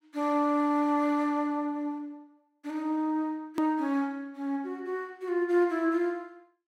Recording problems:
hard cut with a click; at 3.5 s

